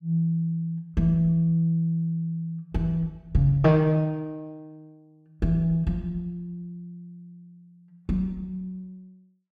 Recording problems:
none

